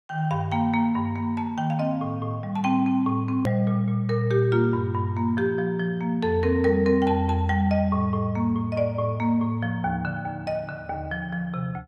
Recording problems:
click at an edit; at 3.5 s

